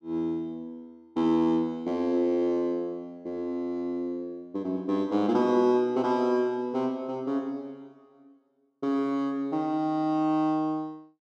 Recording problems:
none

